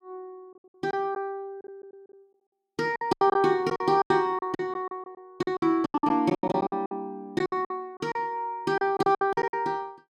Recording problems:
lost packets; 16% of the sound replaced, filled with silence

